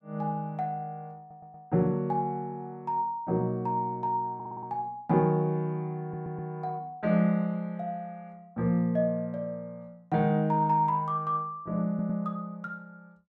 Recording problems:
stutter; 4 times, first at 1 s

